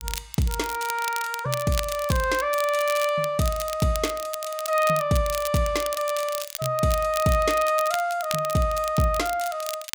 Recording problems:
crackle; vinyl, SNR 11 dB

